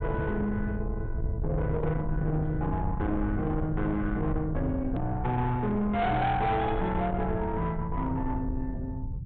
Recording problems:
treble missing; nothing above 4 kHz
distorted audio; soft clipping, signal-to-distortion ratio 10 dB
rumble; below 140 Hz, SNR 5 dB
hard cut with a click; at 5 s

